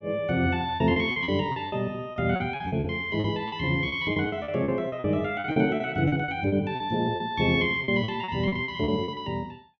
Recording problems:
packet loss; 15% of the sound replaced, filled with repeated pitch periods

